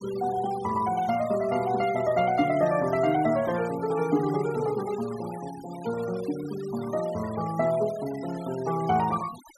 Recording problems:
denoising artefacts; signal-to-artefact ratio 17 dB

